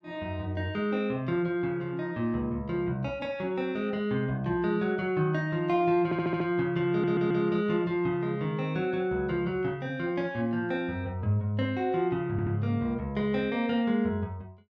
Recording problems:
audio stuttering; at 6 s, at 7 s and at 12 s

